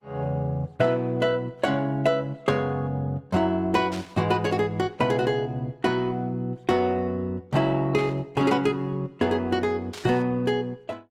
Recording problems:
lossy compression; Opus, log-spectral distance 2 dB, nothing above 20.1 kHz
static burst; at 4 s, at 8 s and at 10 s; peak -9 dB vs average level

